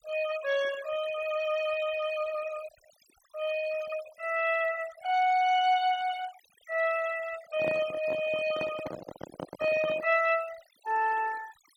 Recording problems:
noise reduction artefacts; signal-to-artefact ratio 16 dB
microphone handling noise; from 7.5 to 10 s; peak -3 dB vs average level

